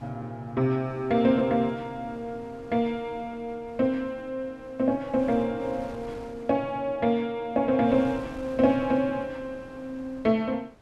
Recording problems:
wind noise; below 870 Hz, SNR 21 dB

